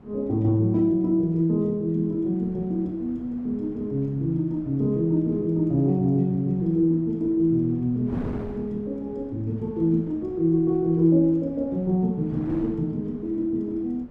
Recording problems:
wind noise; below 360 Hz, SNR 19 dB

